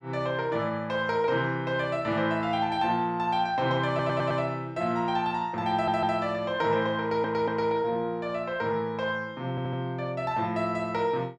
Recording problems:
audio stuttering; 4 times, first at 4 s

